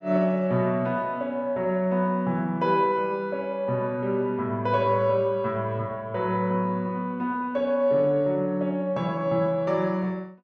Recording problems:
none

